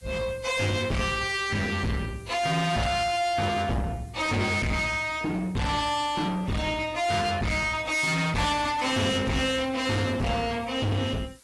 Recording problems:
lossy codec; AAC, log-spectral distance 5 dB, nothing above 11.3 kHz
distorted audio; soft clipping, signal-to-distortion ratio 6 dB
hiss; slope 0 dB per octave, SNR 28 dB

